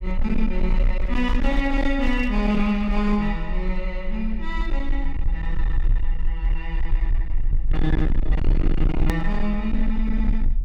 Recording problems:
distortion; hard clipping, signal-to-distortion ratio 7 dB
rumble; below 42 Hz, strongest tone 20 Hz, SNR 1 dB
hard cut with a click; at 9 s

